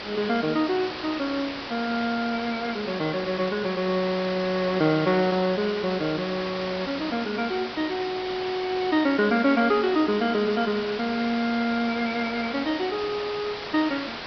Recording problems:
treble cut off; nothing above 5.5 kHz
hiss; SNR 9 dB

